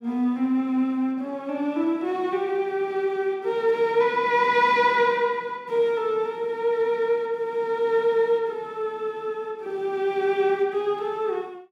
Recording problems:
none

